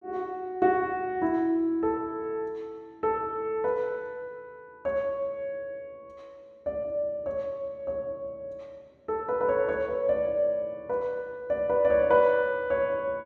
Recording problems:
none

